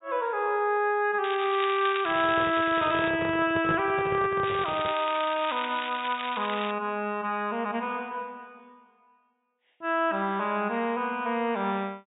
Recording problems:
treble missing; nothing above 4 kHz
crackling; from 1 to 3 s and from 4.5 to 6.5 s; loose cable, SNR 9 dB
microphone handling noise; from 2 to 5 s; peak -1 dB vs average level

